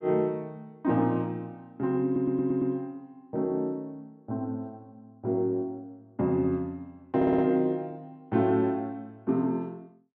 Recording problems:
stutter; at 2 s and at 7 s

